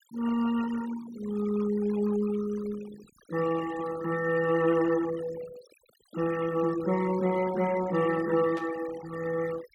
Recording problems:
noise reduction artefacts; signal-to-artefact ratio 15 dB
static burst; at 8.5 s; peak -12 dB vs average level

